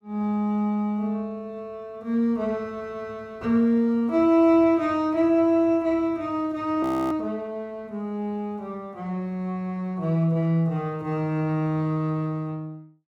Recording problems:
frozen audio; at 7 s

